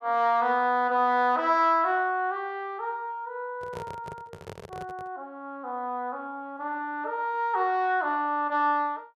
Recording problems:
microphone handling noise; from 3.5 to 5 s; peak -9 dB vs average level

